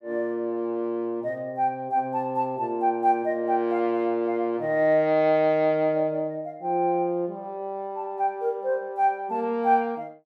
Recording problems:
none

